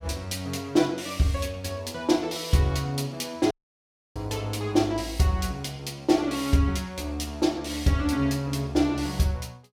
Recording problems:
audio cutting out; at 3.5 s for 0.5 s

